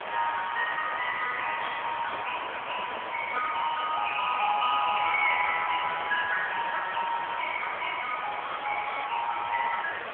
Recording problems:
telephone audio; 990 Hz to 2.2 kHz, AMR-NB
background hiss; SNR 7 dB
handling noise; from 2 to 3.5 s; peak -3 dB vs average level

